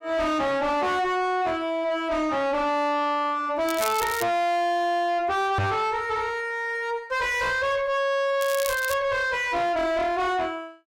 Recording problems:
distorted audio; soft clipping, signal-to-distortion ratio 6 dB
crackling; at 3.5 s and at 8.5 s; loose cable, SNR 10 dB
microphone thump; at 5.5 s; peak +5 dB vs average level

